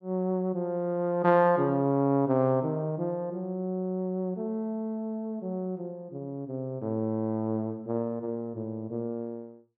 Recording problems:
none

